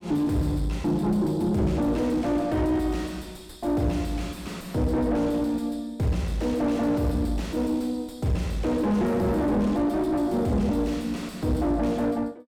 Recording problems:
distorted audio; soft clipping, signal-to-distortion ratio 5 dB

